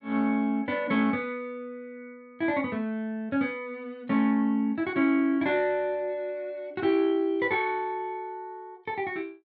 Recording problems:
none

